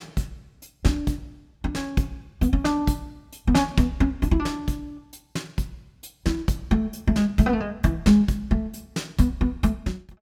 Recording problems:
none

